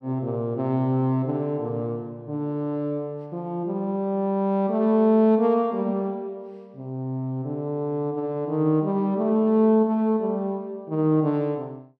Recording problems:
none

